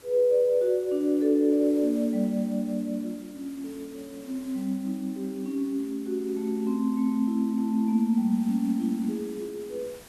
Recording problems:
hiss; slope -3 dB per octave, SNR 24 dB

